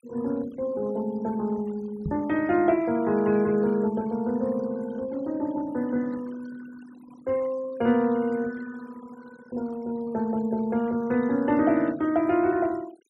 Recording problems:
noise reduction artefacts; signal-to-artefact ratio 23 dB
microphone thump; at 2 s; peak -1 dB vs average level

